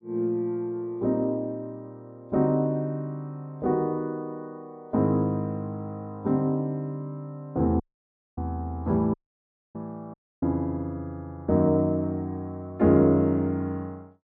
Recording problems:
dropout; at 8 s for 0.5 s, at 9 s for 0.5 s and at 10 s

